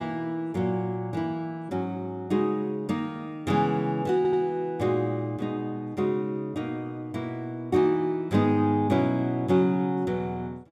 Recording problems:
stutter; at 4 s

